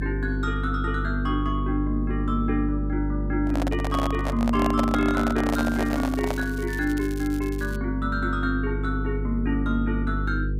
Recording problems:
hum; 50 Hz, harmonics up to 500 Hz, SNR 3 dB
handling noise; from 3.5 to 6.5 s; peak +3 dB vs average level
crackle; from 5.5 to 8 s; loose cable, SNR 18 dB

